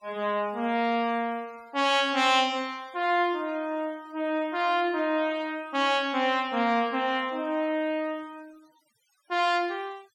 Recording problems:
noise reduction artefacts; signal-to-artefact ratio 28 dB

